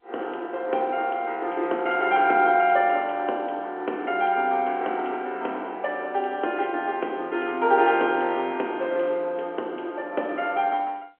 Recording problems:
phone line; 280 Hz to 3.5 kHz, G.711

